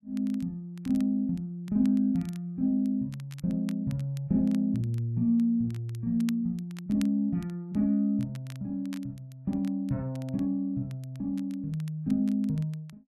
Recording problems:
crackling; vinyl, SNR 25 dB

